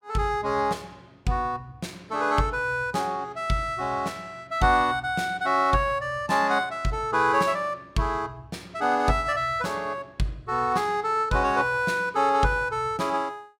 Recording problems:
none

